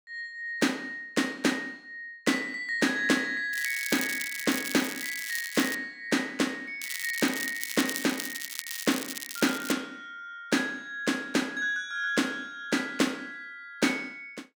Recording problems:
crackle; from 3.5 to 6 s and from 7 to 9.5 s; loose cable, SNR 6 dB

